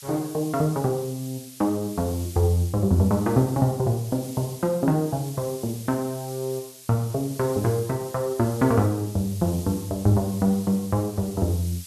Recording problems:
hiss; slope +6 dB per octave, SNR 16 dB

